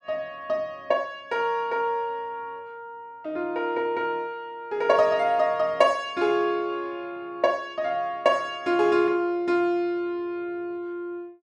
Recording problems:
none

